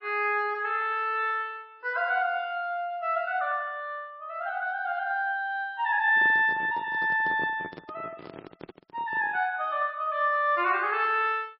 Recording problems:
lossy compression; MP3, log-spectral distance 2 dB, nothing above 4.9 kHz
microphone handling noise; from 6 to 9.5 s; peak -6 dB vs average level

